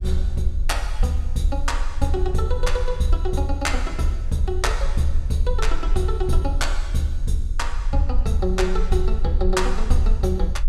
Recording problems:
rumble; below 44 Hz, strongest tone 18 Hz, SNR 2 dB

